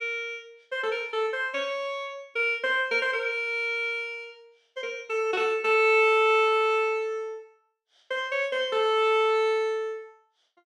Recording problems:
none

